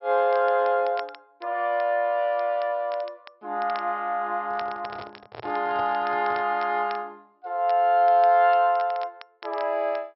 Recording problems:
treble cut off; nothing above 5.4 kHz
crackling; vinyl, SNR 24 dB
microphone handling noise; from 4.5 to 6.5 s; peak -11 dB vs average level

